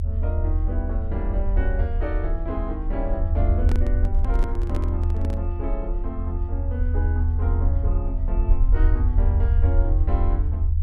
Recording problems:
low-frequency rumble; below 80 Hz, strongest tone 34 Hz, SNR -9 dB
handling noise; from 3.5 to 5.5 s; peak +4 dB vs average level

